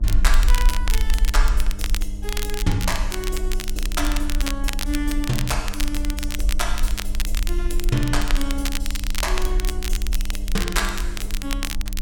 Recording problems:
hum; 50 Hz, harmonics up to 900 Hz, SNR 11 dB
rumble; below 44 Hz, SNR -2 dB
crackle; vinyl, SNR 3 dB

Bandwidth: 17 kHz